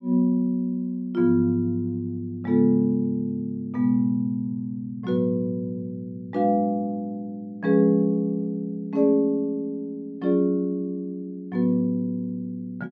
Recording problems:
none

